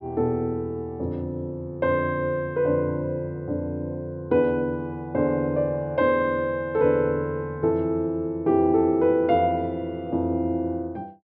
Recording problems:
treble cut off; nothing above 5.5 kHz

